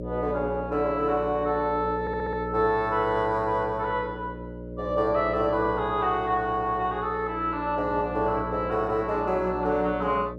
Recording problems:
hum; 60 Hz, harmonics up to 600 Hz, SNR 11 dB
audio stuttering; at 2 s

